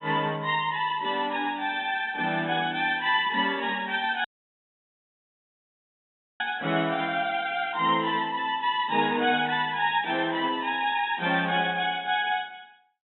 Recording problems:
treble missing; nothing above 3.8 kHz
audio cutting out; at 4 s for 2 s

